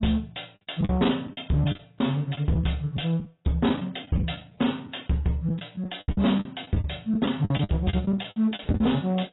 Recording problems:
lossy codec; AAC, log-spectral distance 8 dB, nothing above 3.8 kHz
distortion; hard clipping, signal-to-distortion ratio 10 dB
lost packets; 11% of the sound replaced, filled with the last packet

